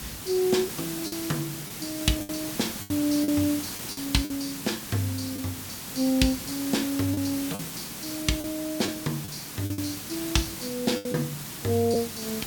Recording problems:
hiss; SNR 6 dB
lost packets; 6% of the sound replaced, filled with the last packet

